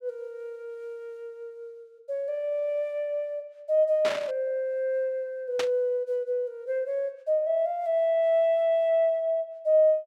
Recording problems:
burst of static; at 4 s and at 5.5 s; peak -1 dB vs average level

